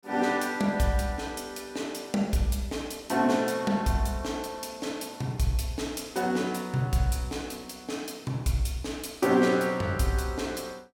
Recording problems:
none

